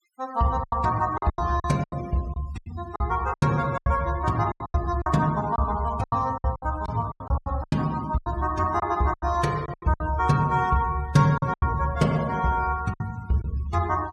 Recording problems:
noise reduction artefacts; signal-to-artefact ratio 22 dB
lost packets; 13% of the sound replaced, filled with silence

